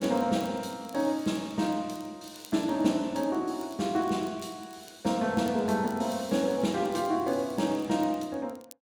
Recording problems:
crackle; vinyl, SNR 26 dB

